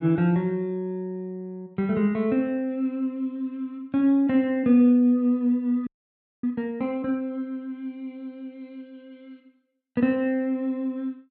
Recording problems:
frozen audio; at 6 s for 0.5 s

